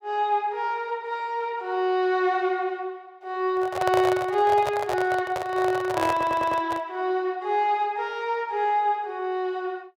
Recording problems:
microphone handling noise; from 3.5 to 7 s; peak +1 dB vs average level
stutter; at 6 s

